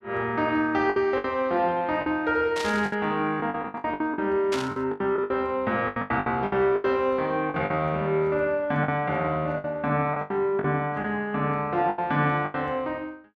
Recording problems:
packet loss; 12% of the sound replaced, filled with the last packet
static burst; at 2.5 s and at 4.5 s; peak -2 dB vs average level

